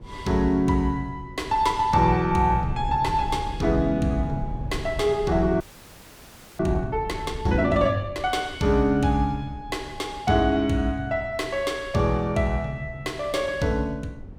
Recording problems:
low-frequency rumble; below 150 Hz, SNR 14 dB
frozen audio; at 5.5 s for 1 s

